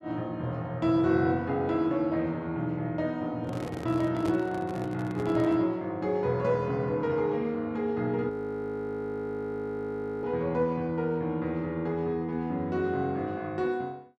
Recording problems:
handling noise; from 3.5 to 5.5 s; peak -3 dB vs average level
audio freezing; at 8.5 s for 2 s

